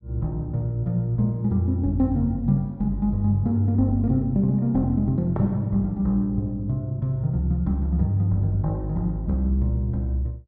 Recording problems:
none

